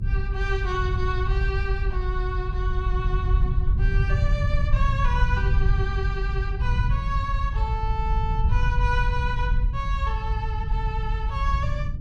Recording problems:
low-frequency rumble; below 90 Hz, SNR -5 dB

